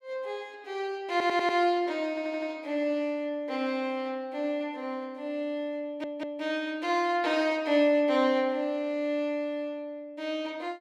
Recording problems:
audio stuttering; at 1 s, at 2 s and at 6 s

